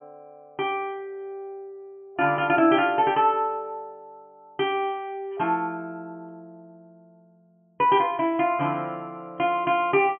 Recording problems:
treble missing; nothing above 3.2 kHz

